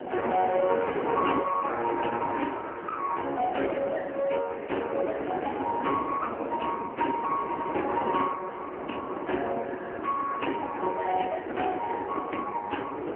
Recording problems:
phone line; 240 Hz to 3 kHz, AMR-NB
wind noise; below 720 Hz, SNR 6 dB

